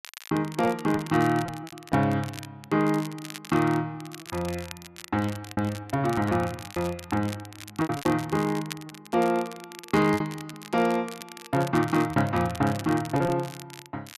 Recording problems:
crackling; vinyl, SNR 16 dB
lost packets; 6% of the sound replaced, filled with repeated pitch periods

